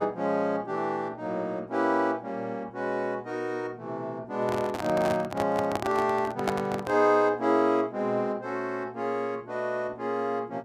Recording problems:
hum; 60 Hz, harmonics up to 960 Hz, SNR 21 dB
microphone handling noise; from 4.5 to 7 s; peak +4 dB vs average level

